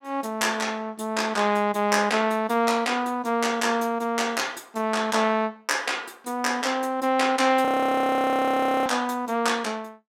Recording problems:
frozen audio; at 7.5 s for 1 s

